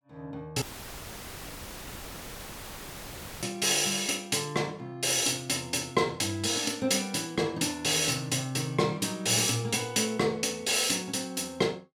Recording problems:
audio cutting out; at 0.5 s for 3 s; filled with static

